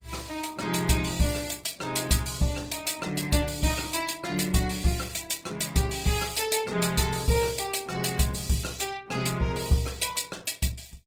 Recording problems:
lossy codec; Opus, log-spectral distance 7 dB

